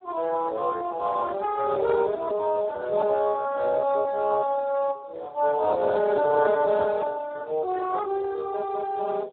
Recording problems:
phone line; 340 Hz to 2 kHz, Speex

